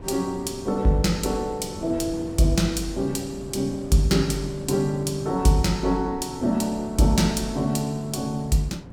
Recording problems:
wind noise; below 340 Hz, SNR 15 dB

